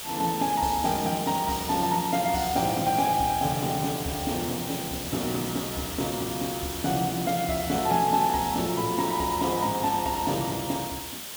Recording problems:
hiss; SNR 7 dB

